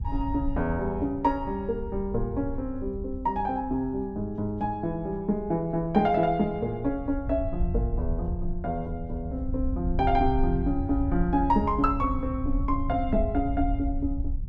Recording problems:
wind noise; below 74 Hz, SNR 6 dB

